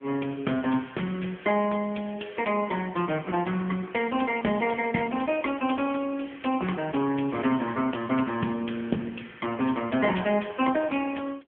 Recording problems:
telephone audio; 150 Hz to 3.2 kHz, AMR-NB

